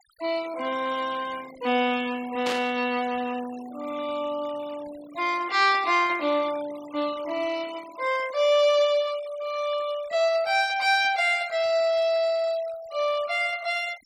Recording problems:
denoising artefacts; signal-to-artefact ratio 20 dB
static burst; at 2.5 s; peak -3 dB vs average level

